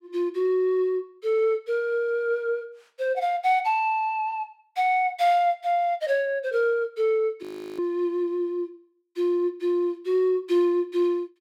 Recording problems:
audio freezing; at 7.5 s

